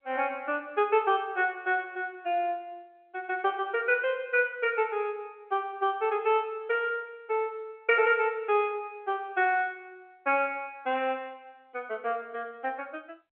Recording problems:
phone line; 320 Hz to 3.3 kHz, G.711

